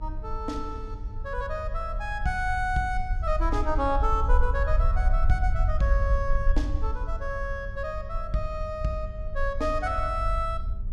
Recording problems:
hum; 50 Hz, harmonics up to 600 Hz, SNR 16 dB
rumble; below 56 Hz, SNR 1 dB

